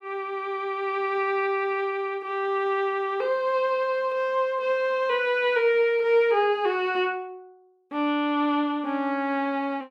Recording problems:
none

